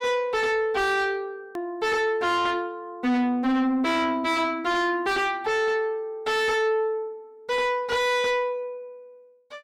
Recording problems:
distortion; soft clipping, signal-to-distortion ratio 7 dB
edit click; at 1.5 s

